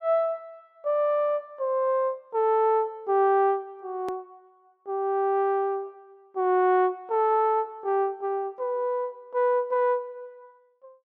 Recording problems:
edit click; at 4 s

